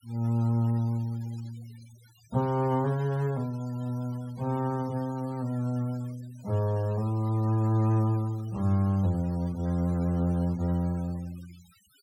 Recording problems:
noise reduction artefacts; signal-to-artefact ratio 24 dB

